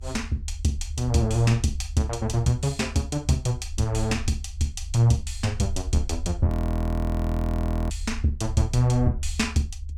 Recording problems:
rumble; below 76 Hz, SNR 9 dB
audio freezing; at 6.5 s for 1.5 s

